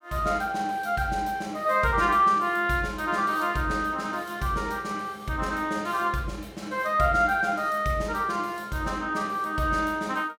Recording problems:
none

